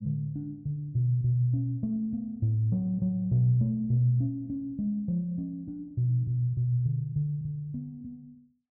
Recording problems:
none

